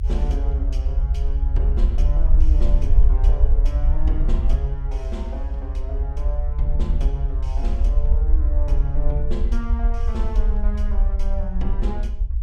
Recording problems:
rumble; below 56 Hz, SNR -11 dB

